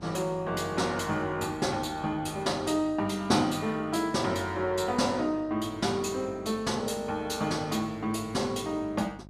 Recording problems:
electrical hum; 50 Hz, harmonics up to 950 Hz, SNR 21 dB

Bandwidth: 14.5 kHz